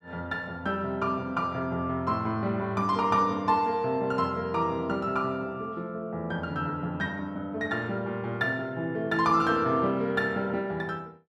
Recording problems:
none

